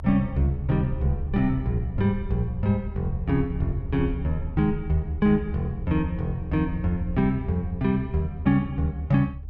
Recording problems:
low-frequency rumble; below 74 Hz, SNR 9 dB

